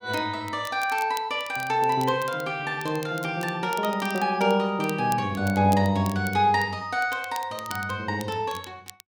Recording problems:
crackle; vinyl, SNR 18 dB

